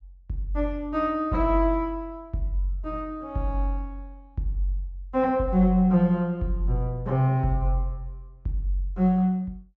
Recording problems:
treble cut off; nothing above 8 kHz

